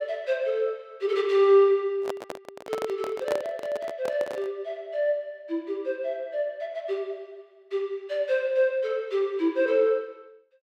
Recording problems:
handling noise; from 2 to 4.5 s; peak 0 dB vs average level

